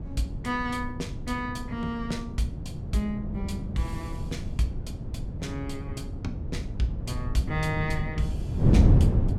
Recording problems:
wind on the microphone; below 180 Hz, SNR -3 dB

